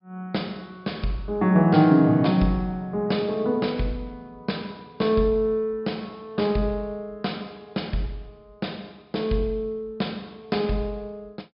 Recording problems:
low-pass filter; nothing above 5.5 kHz

